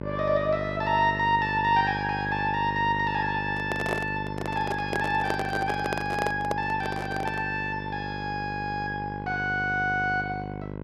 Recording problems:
hum; 50 Hz, harmonics up to 1.6 kHz, SNR 8 dB
handling noise; from 3.5 to 7.5 s; peak +2 dB vs average level

